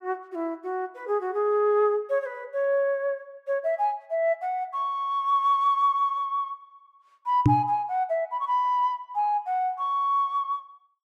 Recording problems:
microphone bump; at 7.5 s; peak +9 dB vs average level

